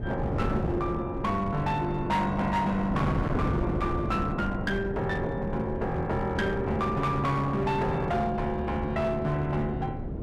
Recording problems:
distortion; hard clipping, signal-to-distortion ratio 10 dB
wind on the microphone; below 350 Hz, SNR 5 dB

